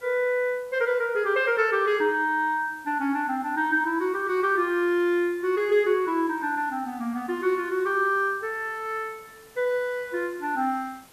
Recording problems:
background hiss; slope -2 dB per octave, SNR 27 dB

